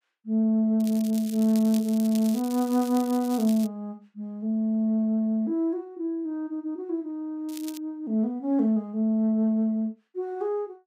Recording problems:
crackle; from 1 to 3.5 s and at 7.5 s; loose cable, SNR 17 dB

